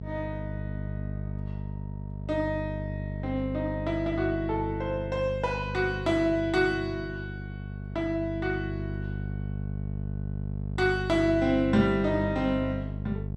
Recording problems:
hum; 50 Hz, harmonics up to 650 Hz, SNR 6 dB

